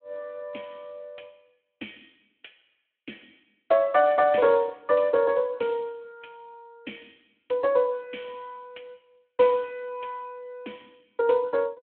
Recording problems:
telephone audio; 220 Hz to 3.4 kHz, Speex

